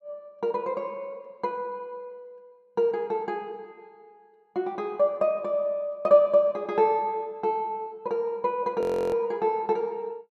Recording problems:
frozen audio; at 9 s

